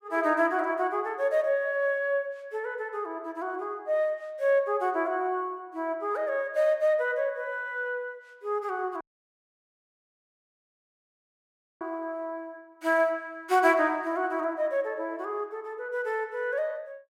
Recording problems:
dropout; at 9 s for 3 s

